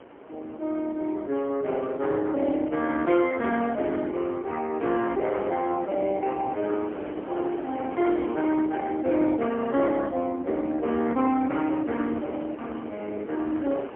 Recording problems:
phone line; 220 Hz to 3.3 kHz, AMR-NB, then MP3
wind noise; below 780 Hz, SNR 14 dB

